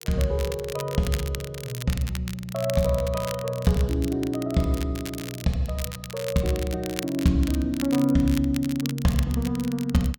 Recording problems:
crackling; vinyl, SNR 13 dB

